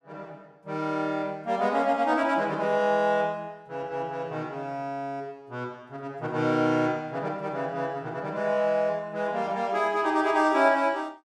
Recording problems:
none

